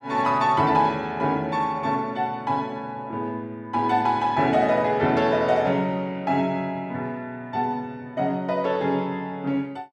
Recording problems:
none

